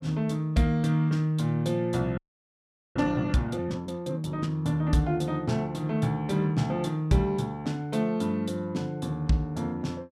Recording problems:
frozen audio; at 2 s for 1 s

